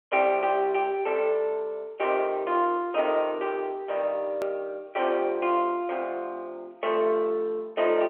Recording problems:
telephone audio; 300 Hz to 3.3 kHz, G.711
hard cut with a click; at 4.5 s

